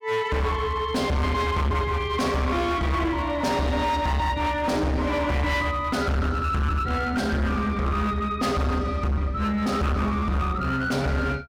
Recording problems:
distorted audio; hard clipping, signal-to-distortion ratio 7 dB

